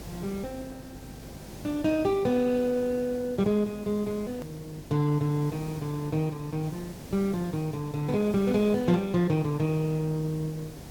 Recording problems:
lossy codec; Opus, log-spectral distance 2 dB, nothing above 18.9 kHz
hum; 50 Hz, harmonics up to 400 Hz, SNR 20 dB
hiss; SNR 17 dB
click at an edit; at 4.5 s

